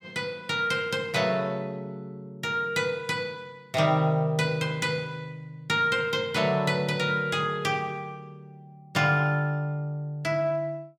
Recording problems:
none

